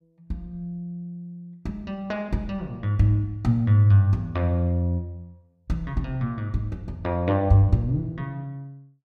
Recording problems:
none

